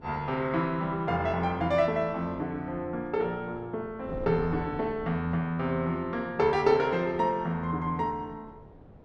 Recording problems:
wind noise; below 400 Hz, SNR 19 dB

